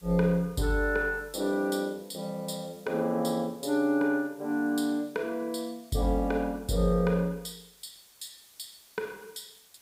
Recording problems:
background hiss; slope 0 dB per octave, SNR 27 dB

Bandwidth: 15.5 kHz